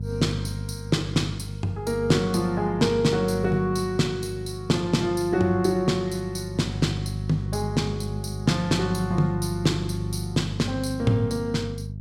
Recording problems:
mains hum; 50 Hz, harmonics up to 300 Hz, SNR 7 dB

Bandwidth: 16.5 kHz